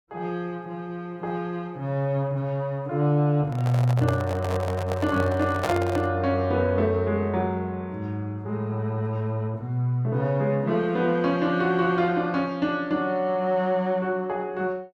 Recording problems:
microphone handling noise; from 3.5 to 6 s; peak +2 dB vs average level

